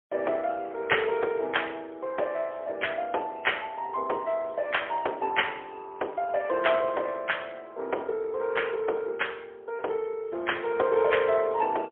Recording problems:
telephone audio; 300 Hz to 3.3 kHz, AMR-NB, then MP3

